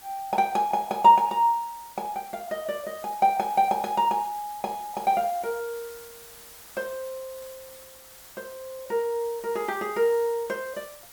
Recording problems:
background hiss; slope -1 dB per octave, SNR 19 dB

